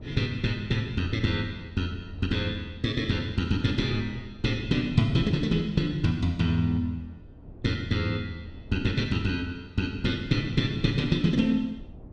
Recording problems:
wind on the microphone; below 200 Hz, SNR 18 dB

